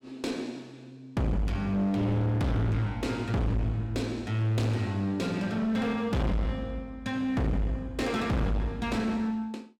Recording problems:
distortion; hard clipping, uneven, signal-to-distortion ratio 7 dB

